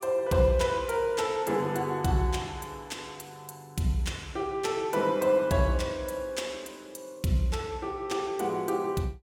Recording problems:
none

